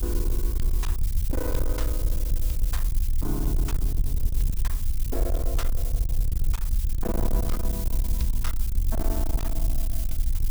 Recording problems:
distorted audio; hard clipping, uneven, signal-to-distortion ratio 8 dB
background hiss; slope +4 dB per octave, SNR 2 dB
rumble; below 52 Hz, SNR -7 dB

